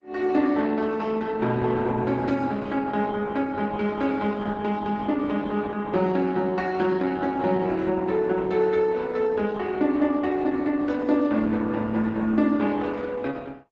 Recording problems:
codec artefacts; Opus, log-spectral distance 3 dB

